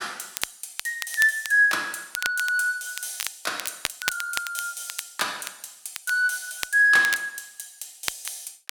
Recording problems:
crackling; vinyl, SNR 10 dB

